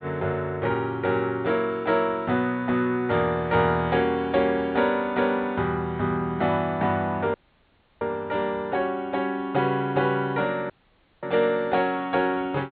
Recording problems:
treble cut off; nothing above 4.3 kHz
audio cutting out; at 7.5 s for 0.5 s and at 11 s for 0.5 s

